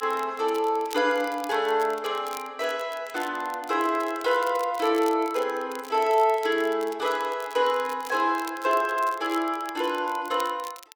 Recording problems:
crackle; vinyl, SNR 20 dB

